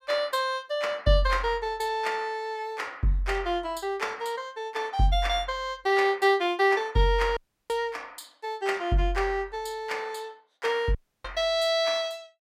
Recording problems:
audio cutting out; at 7.5 s and at 11 s

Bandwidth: 16 kHz